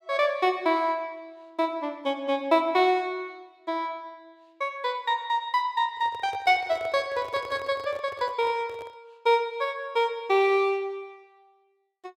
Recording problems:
handling noise; from 6 to 9 s; peak -9 dB vs average level

